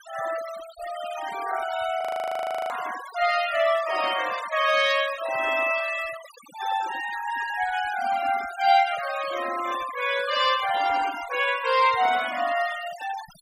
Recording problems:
noise reduction artefacts; signal-to-artefact ratio 13 dB
frozen audio; at 2 s for 0.5 s

